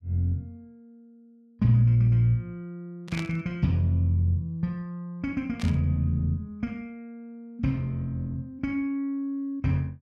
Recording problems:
static burst; at 3 s and at 5.5 s; peak -6 dB vs average level

